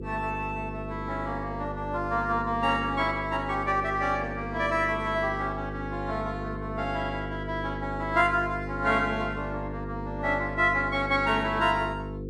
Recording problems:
electrical hum; 50 Hz, harmonics up to 500 Hz, SNR 8 dB

